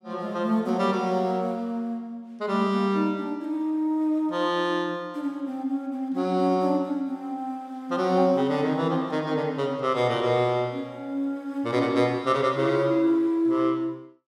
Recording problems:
none

